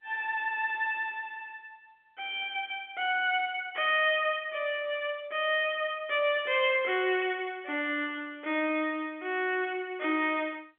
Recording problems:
telephone audio; 300 Hz to 3.5 kHz, G.711

